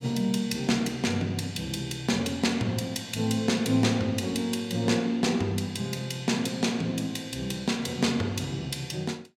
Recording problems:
none

